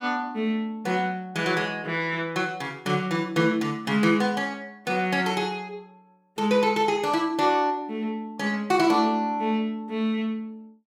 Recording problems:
none

